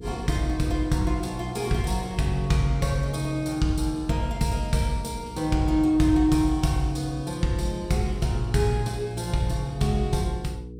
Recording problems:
hum; 60 Hz, harmonics up to 480 Hz, SNR 16 dB

